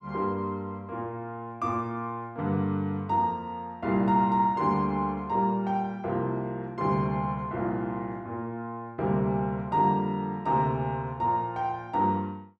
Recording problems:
none

